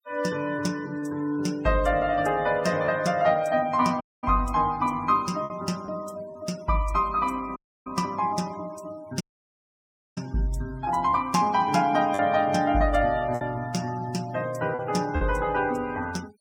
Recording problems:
noise reduction artefacts; signal-to-artefact ratio 22 dB
lost packets; 2% of the sound replaced, filled with repeated pitch periods
dropout; at 4 s, at 7.5 s and at 9 s for 1 s

